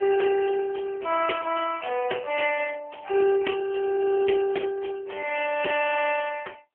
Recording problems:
telephone audio; 320 Hz to 2.5 kHz, AMR-NB

